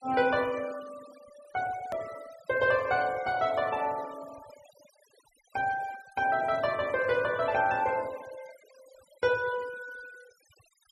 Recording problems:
denoising artefacts; signal-to-artefact ratio 20 dB
hard cut with a click; at 2 s

